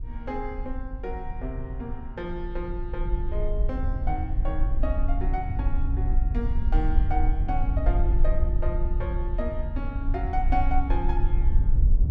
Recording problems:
low-frequency rumble; below 54 Hz, SNR -6 dB

